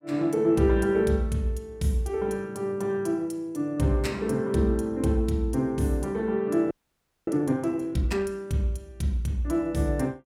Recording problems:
frozen audio; at 6.5 s for 0.5 s

